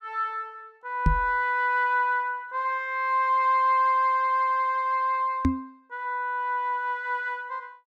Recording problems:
knock on the microphone; at 1 s and at 5.5 s; peak +6 dB vs average level

